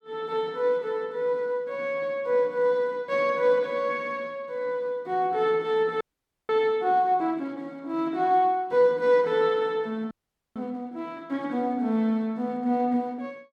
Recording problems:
frozen audio; at 6 s and at 10 s

